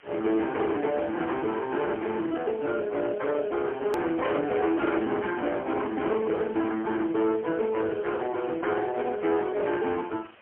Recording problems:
phone line; 260 Hz to 2.1 kHz, AMR-NB, then MP3
distortion; hard clipping, signal-to-distortion ratio 11 dB
background hiss; SNR 25 dB
hard cut with a click; at 4 s

